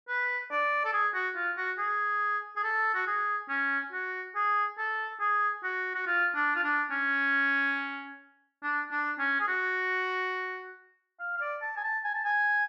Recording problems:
none

